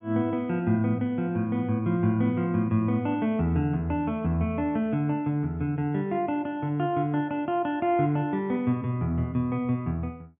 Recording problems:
treble missing; nothing above 3.5 kHz

